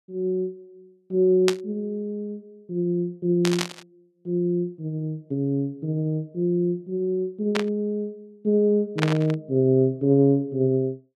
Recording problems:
static burst; 4 times, first at 1.5 s; peak +3 dB vs average level

